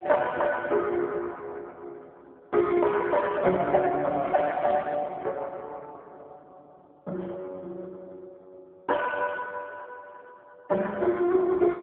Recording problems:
phone line; 170 Hz to 2.5 kHz, AMR-NB

